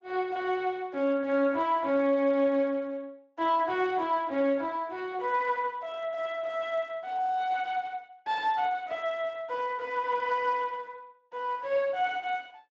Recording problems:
codec artefacts; Speex, log-spectral distance 2 dB

